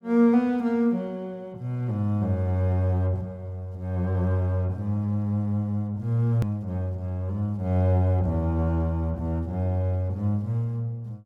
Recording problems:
click at an edit; at 6.5 s

